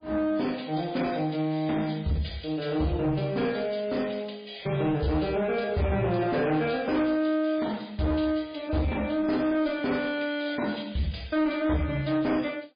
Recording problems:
lossy codec; MP3, log-spectral distance 4 dB
distorted audio; soft clipping, signal-to-distortion ratio 10 dB

